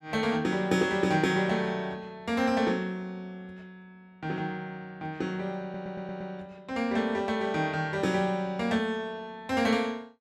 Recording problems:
audio stuttering; at 5.5 s

